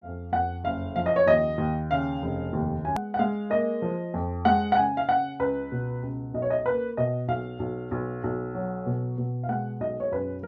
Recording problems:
hard cut with a click; at 3 s

